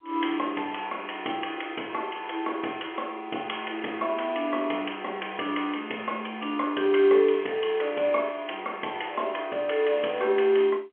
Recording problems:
telephone audio; 300 Hz to 3.3 kHz, G.711

